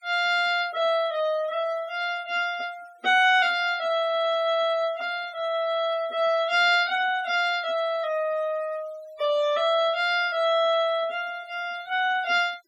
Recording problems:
denoising artefacts; signal-to-artefact ratio 24 dB

